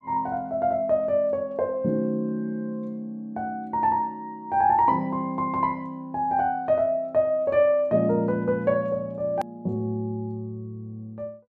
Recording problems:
click at an edit; at 9.5 s

